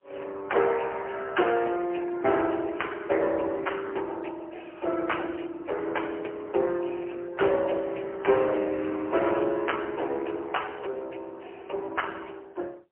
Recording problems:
telephone audio; 300 Hz to 3.1 kHz, AMR-NB, then MP3

